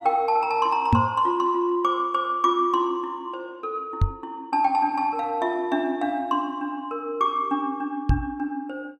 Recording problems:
knock on the microphone; at 1 s, at 4 s and at 8 s; peak +8 dB vs average level

